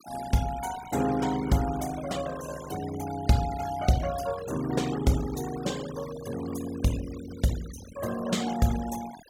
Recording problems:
noise reduction artefacts; signal-to-artefact ratio 14 dB

